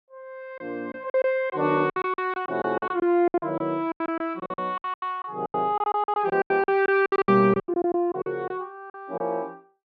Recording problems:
lost packets; 18% of the sound replaced, filled with silence

